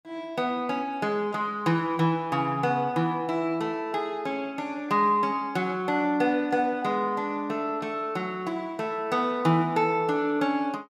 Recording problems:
none

